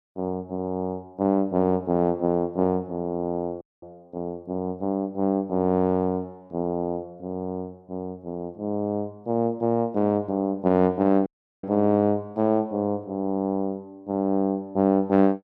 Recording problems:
audio cutting out; at 3.5 s and at 11 s

